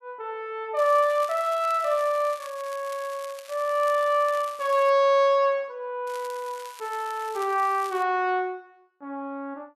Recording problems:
crackle; from 1 to 5 s and from 6 to 8 s; loose cable, SNR 20 dB

